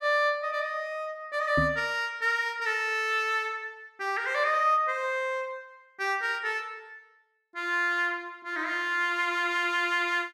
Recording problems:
microphone bump; at 1.5 s; peak +2 dB vs average level

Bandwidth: 15 kHz